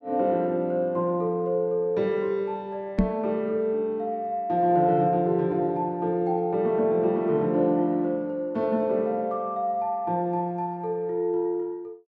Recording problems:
microphone thump; at 3 s; peak +6 dB vs average level

